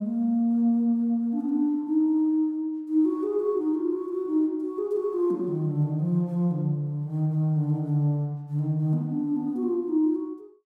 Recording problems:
none

